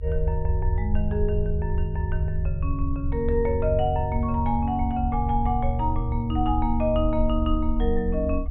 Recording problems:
treble cut off; nothing above 3.7 kHz
low-frequency rumble; below 70 Hz, SNR 3 dB

